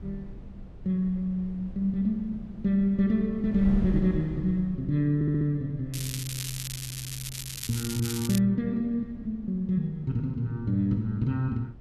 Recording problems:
wind noise; below 130 Hz, SNR 15 dB
stutter; at 5 s and at 7 s
crackle; from 6 to 8.5 s; loose cable, SNR 8 dB

